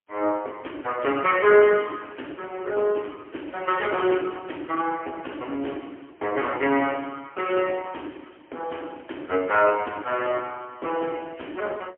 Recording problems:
phone line; 240 Hz to 3.1 kHz, AMR-NB, then MP3

